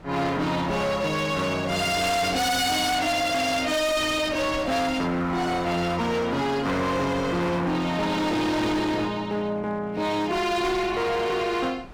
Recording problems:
distorted audio; hard clipping, uneven, signal-to-distortion ratio 7 dB
wind on the microphone; below 1.1 kHz, SNR 18 dB

